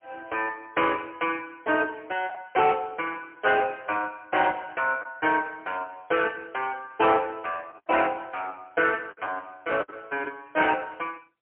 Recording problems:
telephone audio; 300 Hz to 3.1 kHz, AMR-NB, then MP3
packet loss; 2% of the sound replaced, filled with the last packet

